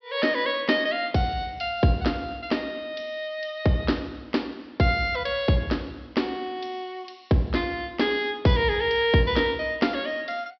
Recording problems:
low-pass filter; nothing above 5.5 kHz

